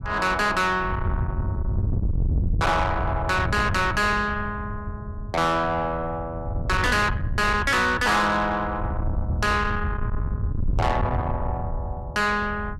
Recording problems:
distortion; soft clipping, signal-to-distortion ratio 7 dB
wind on the microphone; below 130 Hz, SNR 5 dB

